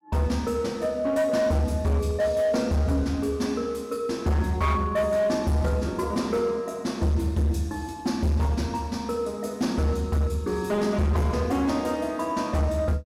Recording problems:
distortion; hard clipping, signal-to-distortion ratio 11 dB

